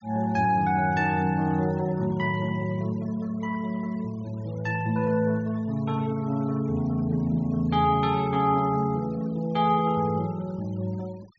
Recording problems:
low-pass filter; nothing above 7.2 kHz
denoising artefacts; signal-to-artefact ratio 26 dB

